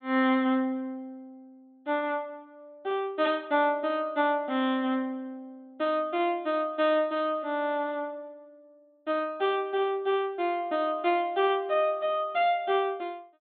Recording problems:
low-pass filter; nothing above 3.9 kHz

